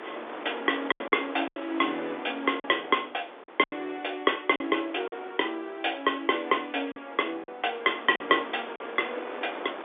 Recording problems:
phone line; 260 Hz to 3.6 kHz, G.711
wind on the microphone; below 1.5 kHz, SNR 13 dB
lost packets; 6% of the sound replaced, filled with silence

